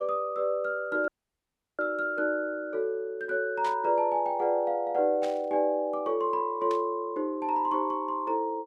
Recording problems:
audio cutting out; at 1 s for 0.5 s
static burst; at 3.5 s, at 5 s and at 6.5 s; peak -9 dB vs average level

